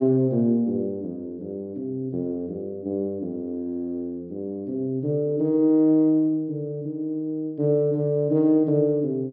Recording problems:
treble cut off; nothing above 5.5 kHz

